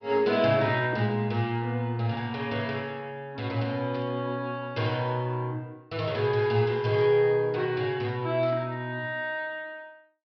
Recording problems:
treble missing; nothing above 5.5 kHz
static burst; 4 times, first at 1 s; peak -15 dB vs average level

